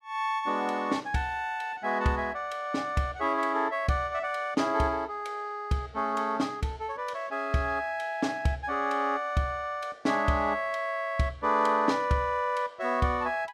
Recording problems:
none

